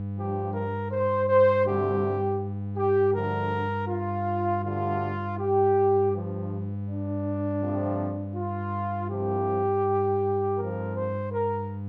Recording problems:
hum; 50 Hz, harmonics up to 700 Hz, SNR 7 dB

